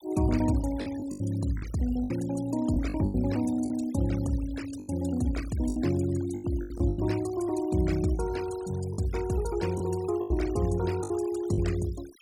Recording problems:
noise reduction artefacts; signal-to-artefact ratio 18 dB
lost packets; 9% of the sound replaced, filled with the last packet

